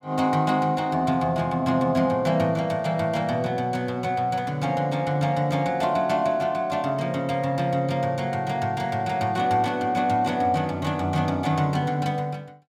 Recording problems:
none

